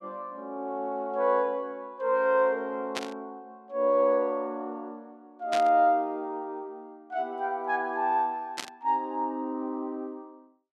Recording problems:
burst of static; at 3 s, at 5.5 s and at 8.5 s; peak 0 dB vs average level

